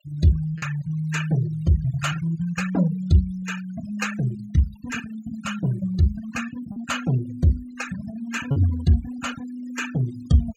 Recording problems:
denoising artefacts; signal-to-artefact ratio 14 dB
lost packets; 1.1% of the sound replaced, filled with repeated pitch periods

